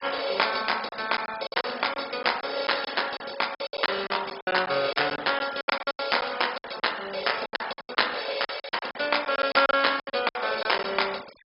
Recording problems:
low-pass filter; nothing above 5.5 kHz
noise reduction artefacts; signal-to-artefact ratio 16 dB
packet loss; 15% of the sound replaced, filled with silence

